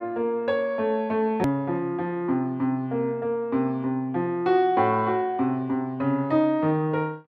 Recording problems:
hard cut with a click; at 1.5 s

